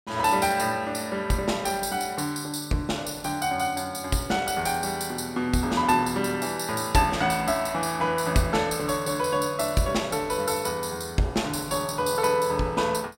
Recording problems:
none

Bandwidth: 16 kHz